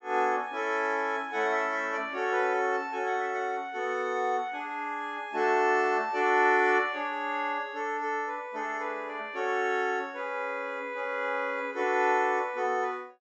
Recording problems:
treble cut off; nothing above 8 kHz

